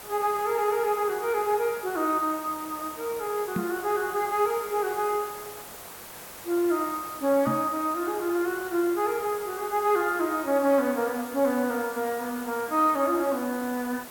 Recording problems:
hiss; SNR 14 dB
microphone bump; at 3.5 s and at 7.5 s; peak 0 dB vs average level

